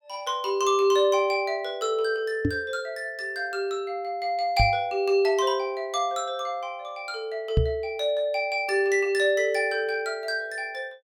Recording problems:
microphone bump; at 2.5 s, at 4.5 s and at 7.5 s; peak +7 dB vs average level

